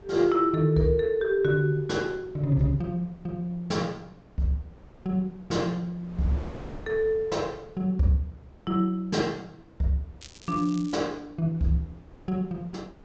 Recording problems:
low-pass filter; nothing above 8 kHz
wind on the microphone; below 480 Hz, SNR 22 dB
crackle; at 10 s; loose cable, SNR 21 dB

